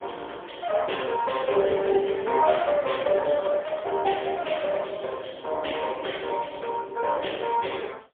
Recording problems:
phone line; 340 Hz to 3.5 kHz, AMR-NB, then MP3

